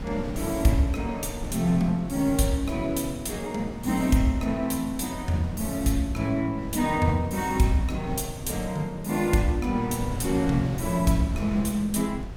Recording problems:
wind noise; below 220 Hz, SNR 11 dB

